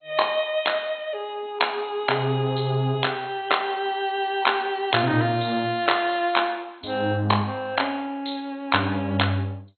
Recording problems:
lossy codec; MP2, log-spectral distance 4 dB, nothing above 4.2 kHz

